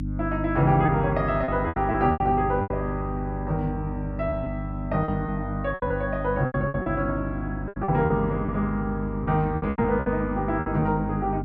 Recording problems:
hum; 50 Hz, harmonics up to 300 Hz, SNR 5 dB
lost packets; 11% of the sound replaced, filled with repeated pitch periods

